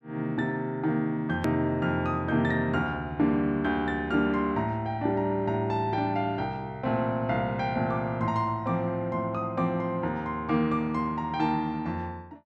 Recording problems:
click at an edit; at 1.5 s

